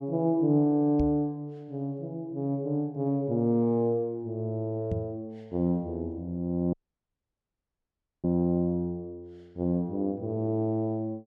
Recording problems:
knock on the microphone; at 1 s and at 5 s; peak +1 dB vs average level
audio cutting out; at 6.5 s for 1.5 s

